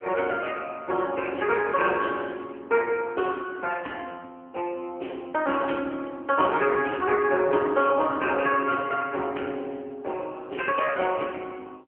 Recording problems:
telephone audio; 220 Hz to 3.3 kHz, AMR-NB

